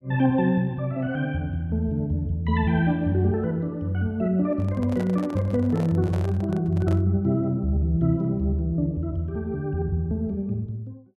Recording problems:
handling noise; from 4.5 to 7 s; peak -7 dB vs average level

